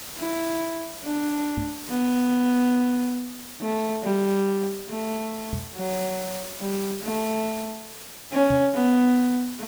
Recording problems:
background hiss; slope -1 dB per octave, SNR 12 dB
microphone bump; at 1.5 s, at 5.5 s and at 8.5 s; peak -1 dB vs average level

